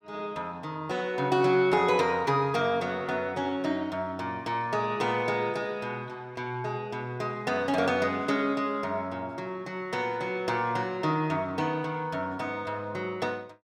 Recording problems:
none

